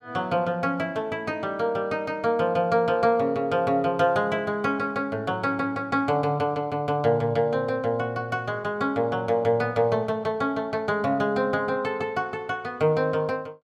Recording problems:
none

